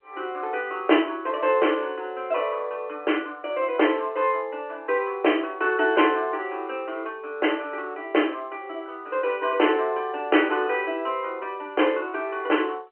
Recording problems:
telephone audio; 260 Hz to 3.2 kHz, G.711

